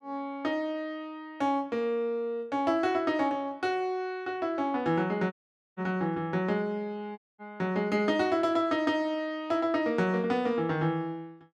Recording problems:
dropout; at 5.5 s and at 7 s

